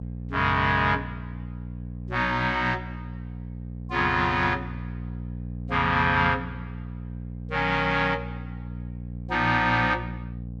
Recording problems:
electrical hum; 60 Hz, harmonics up to 540 Hz, SNR 12 dB

